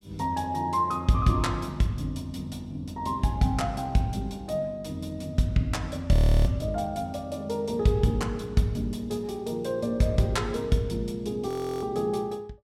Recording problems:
frozen audio; at 6 s and at 11 s

